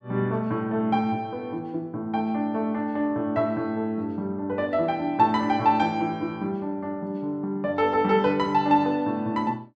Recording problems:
none

